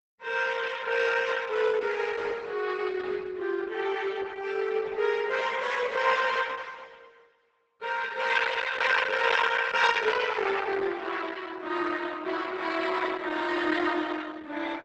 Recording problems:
codec artefacts; Opus, log-spectral distance 6 dB

